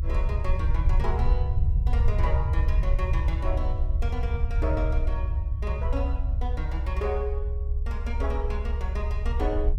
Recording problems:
low-frequency rumble; below 68 Hz, SNR -7 dB

